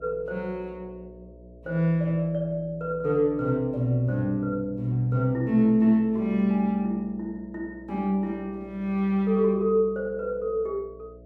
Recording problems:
hum; 60 Hz, harmonics up to 660 Hz, SNR 23 dB

